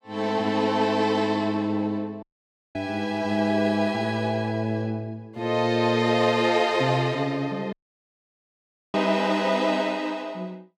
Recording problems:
dropout; at 2 s for 0.5 s and at 7.5 s for 1 s

